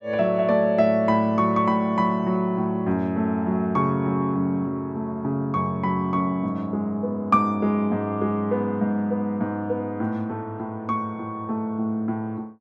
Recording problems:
none

